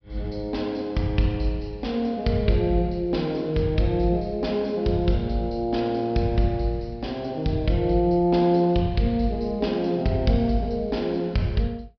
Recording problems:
treble missing; nothing above 5.5 kHz

